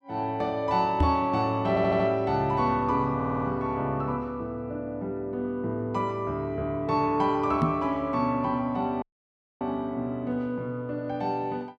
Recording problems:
knock on the microphone; at 1 s and at 7.5 s; peak +6 dB vs average level
stutter; at 1.5 s and at 3 s
audio cutting out; at 9 s for 0.5 s

